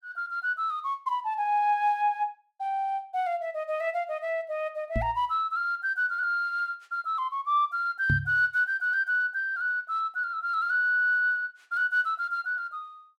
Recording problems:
knock on the microphone; at 5 s and at 8 s; peak +4 dB vs average level

